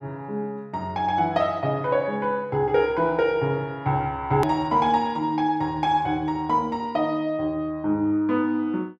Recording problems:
click at an edit; at 4.5 s

